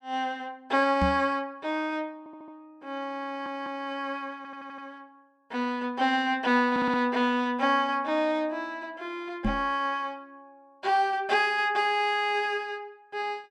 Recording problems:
microphone thump; at 1 s and at 9.5 s; peak +3 dB vs average level
stutter; 4 times, first at 2 s

